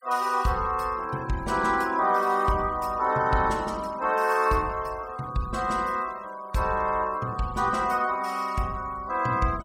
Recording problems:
noise reduction artefacts; signal-to-artefact ratio 23 dB

